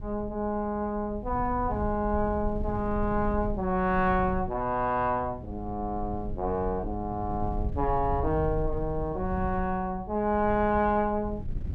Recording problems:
wind on the microphone; below 96 Hz, SNR 9 dB

